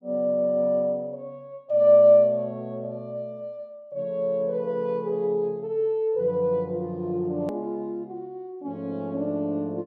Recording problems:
click at an edit; at 7.5 s

